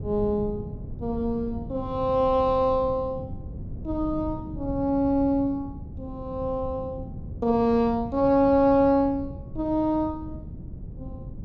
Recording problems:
wind noise; below 170 Hz, SNR 13 dB

